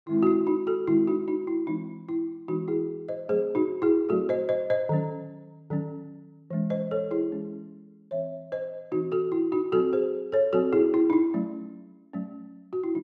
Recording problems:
none

